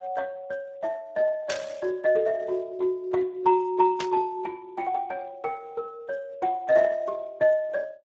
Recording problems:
lossy compression; Speex, log-spectral distance 2 dB
static burst; at 1.5 s and at 4 s; peak -2 dB vs average level

